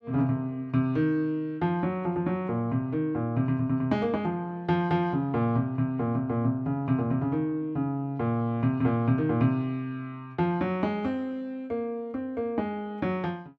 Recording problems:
none

